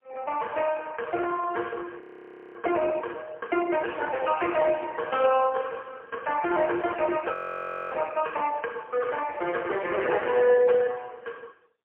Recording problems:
telephone audio; 300 Hz to 3.1 kHz, AMR-NB, then MP3
frozen audio; at 2 s for 0.5 s and at 7.5 s for 0.5 s

